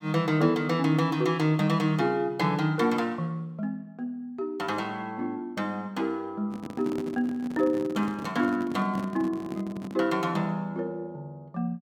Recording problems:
handling noise; from 6.5 to 10 s; peak -4 dB vs average level

